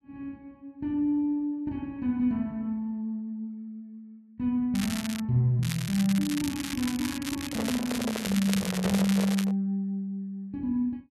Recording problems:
crackle; at 5 s and from 5.5 to 9.5 s; loose cable, SNR 8 dB
microphone handling noise; from 7.5 to 9.5 s; peak -1 dB vs average level

